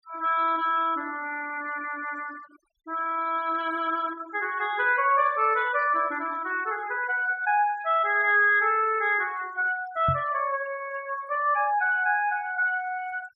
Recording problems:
noise reduction artefacts; signal-to-artefact ratio 21 dB
knock on the microphone; at 10 s; peak 0 dB vs average level

